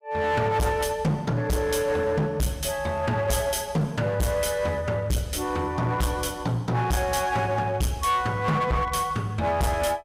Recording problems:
distortion; hard clipping, uneven, signal-to-distortion ratio 7 dB

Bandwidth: 15.5 kHz